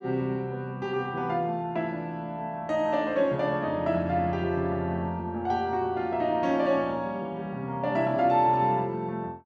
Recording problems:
none

